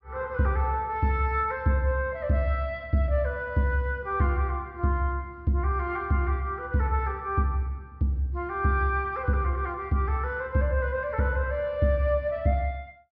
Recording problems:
treble missing; nothing above 5.5 kHz

